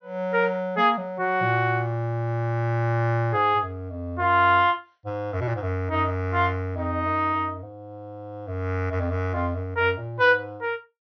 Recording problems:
treble missing; nothing above 6 kHz

